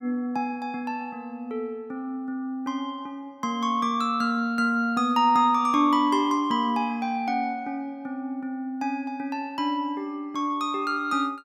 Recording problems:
none

